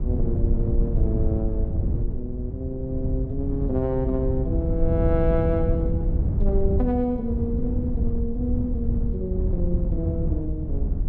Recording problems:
wind noise; below 96 Hz, SNR -2 dB

